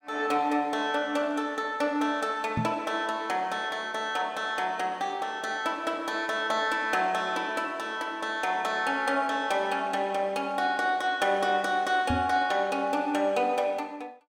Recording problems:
microphone bump; at 2.5 s and at 12 s; peak +2 dB vs average level

